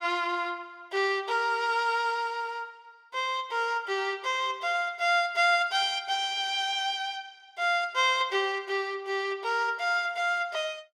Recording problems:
none

